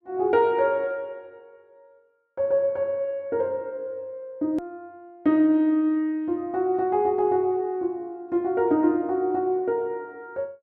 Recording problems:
edit click; at 4.5 s

